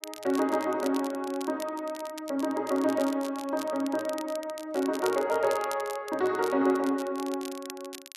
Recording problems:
crackle; vinyl, SNR 16 dB

